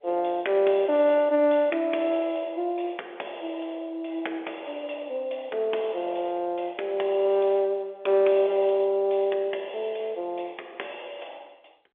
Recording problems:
phone line; 300 Hz to 3.6 kHz, G.711

